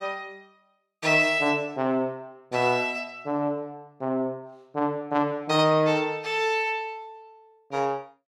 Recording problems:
none

